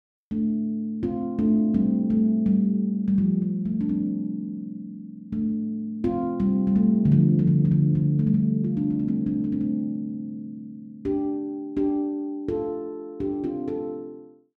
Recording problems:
none

